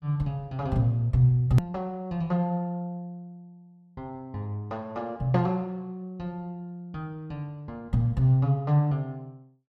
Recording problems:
hard cut with a click; at 1.5 s

